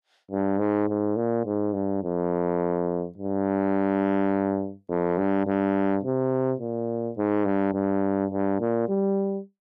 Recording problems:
distorted audio; soft clipping, signal-to-distortion ratio 11 dB

